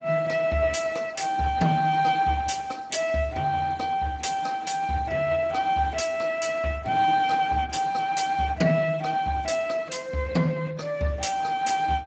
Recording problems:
lossy codec; Speex, log-spectral distance 4 dB, nothing above 7.8 kHz

